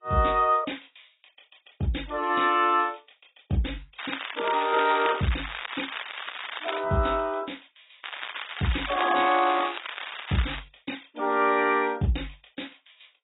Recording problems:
codec artefacts; AAC, log-spectral distance 15 dB, nothing above 3.8 kHz
crackling; from 4 to 7 s and from 8 to 11 s; loose cable, SNR 9 dB

